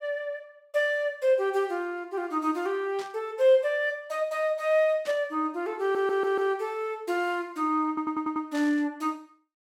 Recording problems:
burst of static; at 3 s, at 5 s and at 8.5 s; peak -11 dB vs average level
stutter; at 6 s and at 8 s

